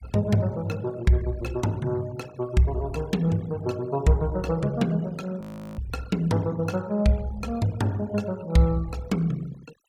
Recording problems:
denoising artefacts; signal-to-artefact ratio 23 dB
frozen audio; at 5.5 s

